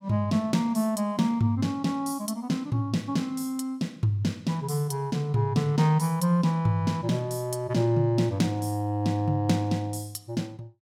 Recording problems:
none

